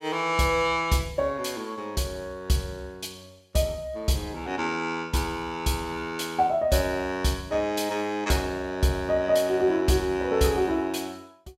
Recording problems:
none

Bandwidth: 16 kHz